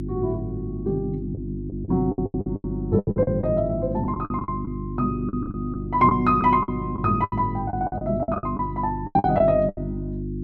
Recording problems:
hum; 50 Hz, harmonics up to 350 Hz, SNR 7 dB
lost packets; 14% of the sound replaced, filled with the last packet

